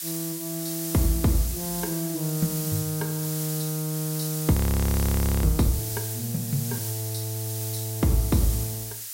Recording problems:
background hiss; slope +6 dB per octave, SNR 4 dB
frozen audio; at 4.5 s for 1 s

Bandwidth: 16 kHz